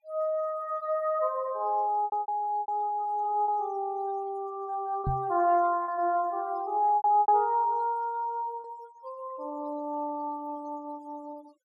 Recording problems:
noise reduction artefacts; signal-to-artefact ratio 27 dB
packet loss; 5% of the sound replaced, filled with repeated pitch periods
microphone thump; at 5 s; peak 0 dB vs average level

